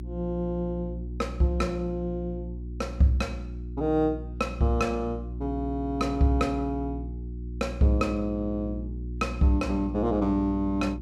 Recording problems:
electrical hum; 60 Hz, harmonics up to 360 Hz, SNR 9 dB

